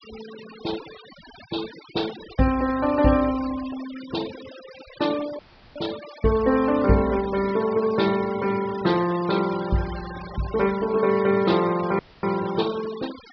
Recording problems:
low-pass filter; nothing above 5.5 kHz
denoising artefacts; signal-to-artefact ratio 15 dB
audio cutting out; at 5.5 s and at 12 s

